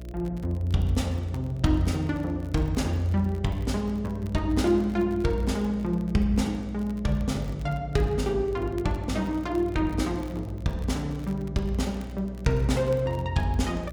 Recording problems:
electrical hum; 60 Hz, harmonics up to 660 Hz, SNR 12 dB
crackling; vinyl, SNR 28 dB

